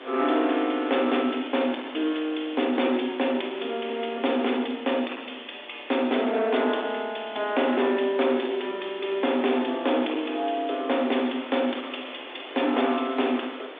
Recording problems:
telephone audio; 220 Hz to 3.6 kHz, G.726
distorted audio; soft clipping, signal-to-distortion ratio 12 dB
hiss; SNR 17 dB

